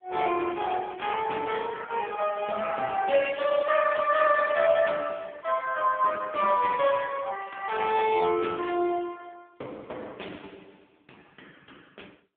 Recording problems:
phone line; 300 Hz to 3.5 kHz, AMR-NB

